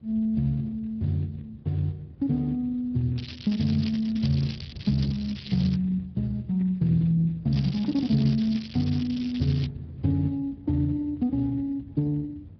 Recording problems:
low-pass filter; nothing above 5.5 kHz
codec artefacts; Speex, log-spectral distance 5 dB
rumble; below 170 Hz, SNR 19 dB
crackle; from 3 to 6 s and from 7.5 to 9.5 s; loose cable, SNR 14 dB

